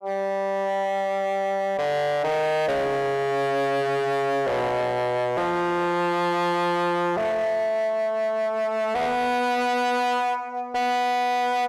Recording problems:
distortion; hard clipping, signal-to-distortion ratio 6 dB

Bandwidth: 13 kHz